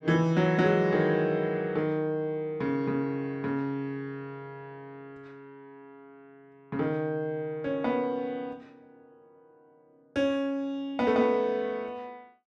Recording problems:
none

